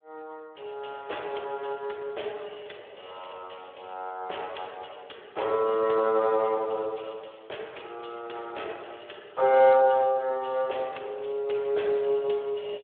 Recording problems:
telephone audio; 340 Hz to 3.5 kHz, Speex

